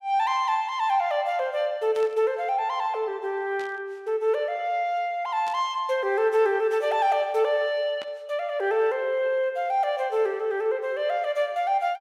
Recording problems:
static burst; 4 times, first at 2 s; peak -12 dB vs average level

